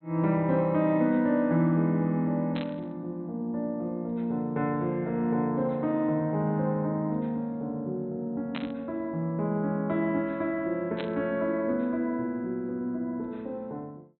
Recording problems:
treble missing; nothing above 4 kHz
burst of static; at 2.5 s, at 8.5 s and at 11 s; peak -4 dB vs average level

